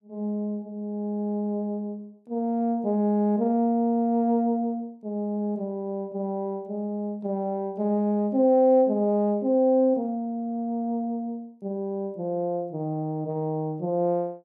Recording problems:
none

